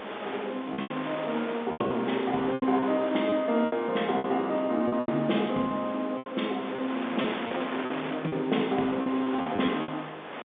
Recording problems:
phone line; 170 Hz to 3.6 kHz, G.711
wind on the microphone; below 2.1 kHz, SNR 10 dB
packet loss; 11% of the sound replaced, filled with repeated pitch periods
crackling; at 0.5 s and at 9.5 s; loose cable, SNR 26 dB

